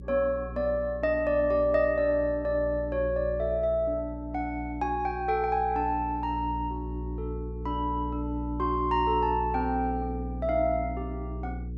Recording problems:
hum; 60 Hz, harmonics up to 480 Hz, SNR 9 dB

